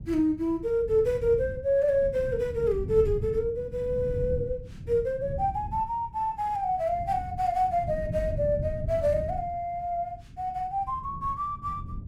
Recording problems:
wind on the microphone; below 150 Hz, SNR 10 dB

